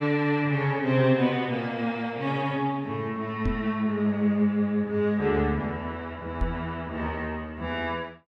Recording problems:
microphone thump; at 3.5 s and at 6.5 s; peak +2 dB vs average level

